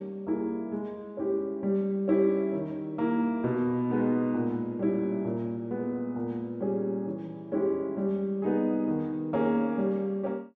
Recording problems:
none

